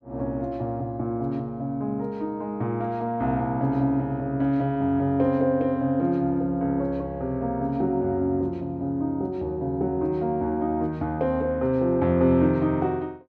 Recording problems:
none

